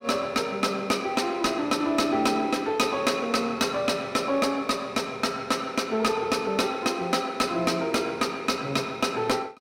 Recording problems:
distorted audio; soft clipping, signal-to-distortion ratio 11 dB

